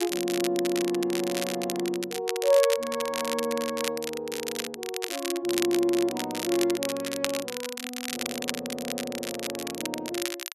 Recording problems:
crackling; vinyl, SNR 5 dB

